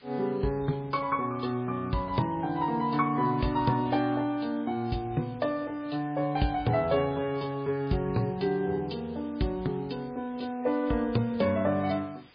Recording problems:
lossy codec; MP3, log-spectral distance 5 dB, nothing above 4.6 kHz
background hiss; SNR 27 dB

